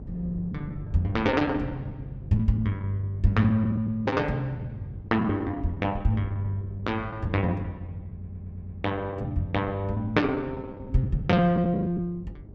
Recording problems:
hum; 50 Hz, harmonics up to 600 Hz, SNR 17 dB
wind noise; below 220 Hz, SNR 19 dB
lost packets; 9% of the sound replaced, filled with the last packet
stutter; at 8 s

